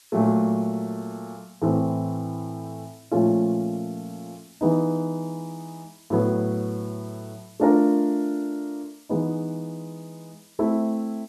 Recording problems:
background hiss; slope +3 dB per octave, SNR 27 dB

